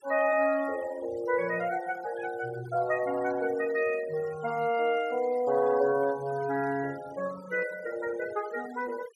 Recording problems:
denoising artefacts; signal-to-artefact ratio 19 dB

